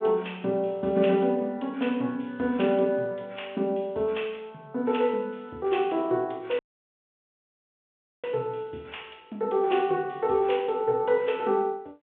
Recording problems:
phone line; 220 Hz to 3.5 kHz, G.726
dropout; at 6.5 s for 1.5 s

